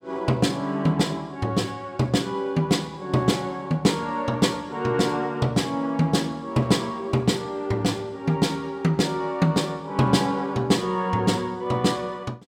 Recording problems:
none

